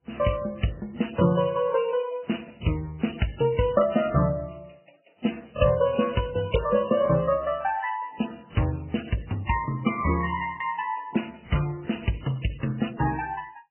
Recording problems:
codec artefacts; MP3, then AAC, log-spectral distance 8 dB, nothing above 3 kHz

